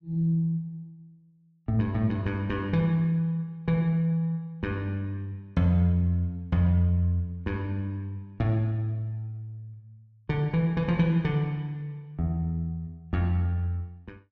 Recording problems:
none

